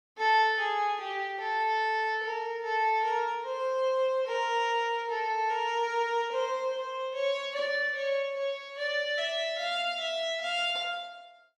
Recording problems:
none

